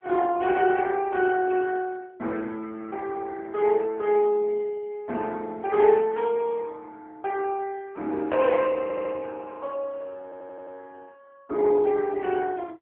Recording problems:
telephone audio; 240 Hz to 3.4 kHz, AMR-NB
stutter; at 9 s and at 10 s

